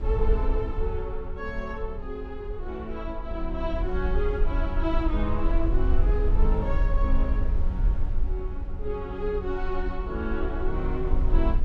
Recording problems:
rumble; below 52 Hz, SNR -3 dB

